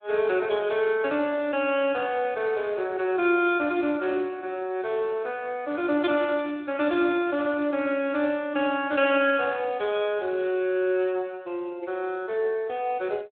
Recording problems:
phone line; 260 Hz to 3.8 kHz, Speex

